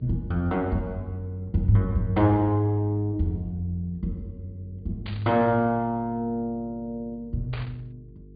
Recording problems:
low-pass filter; nothing above 4.7 kHz
electrical hum; 50 Hz, harmonics up to 450 Hz, SNR 22 dB
static burst; at 5 s and at 7.5 s; peak -9 dB vs average level

